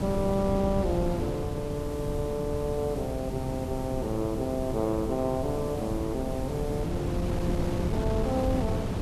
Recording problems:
background hiss; slope 0 dB per octave, SNR 20 dB
wind noise; below 290 Hz, SNR 2 dB

